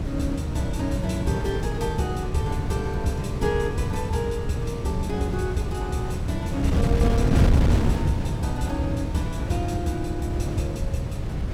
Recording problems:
wind noise; below 180 Hz, SNR -2 dB

